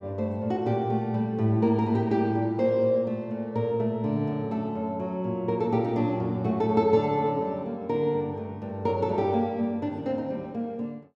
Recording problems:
none

